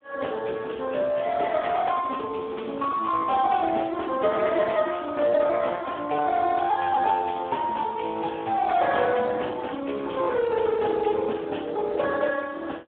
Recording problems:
telephone audio; 320 Hz to 3.4 kHz, Speex

